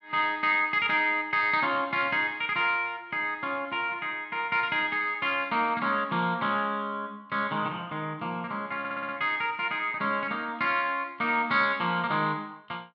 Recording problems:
audio stuttering; at 9 s

